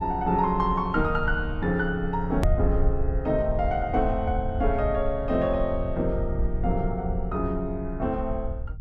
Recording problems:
low-frequency rumble; below 76 Hz, SNR 5 dB
hard cut with a click; at 2.5 s

